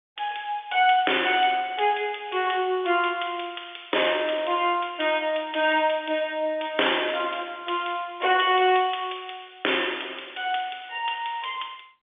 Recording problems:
phone line; 280 Hz to 3.6 kHz, G.711

